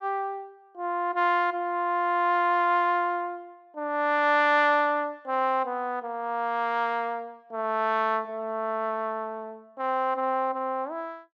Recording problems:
none

